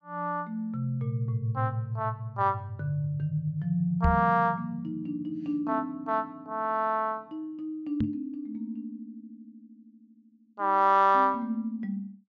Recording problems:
low-pass filter; nothing above 8 kHz
microphone bump; at 4 s and at 8 s; peak +5 dB vs average level

